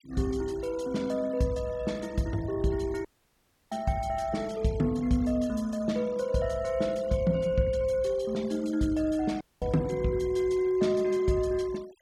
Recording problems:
noise reduction artefacts; signal-to-artefact ratio 23 dB
audio cutting out; at 3 s for 0.5 s and at 9.5 s

